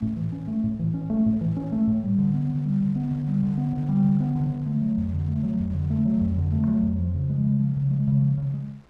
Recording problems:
wind noise; below 1.6 kHz, SNR 31 dB

